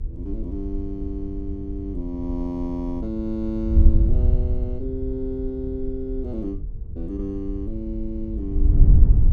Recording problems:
electrical hum; 50 Hz, harmonics up to 450 Hz, SNR 22 dB
wind noise; below 74 Hz, SNR -5 dB

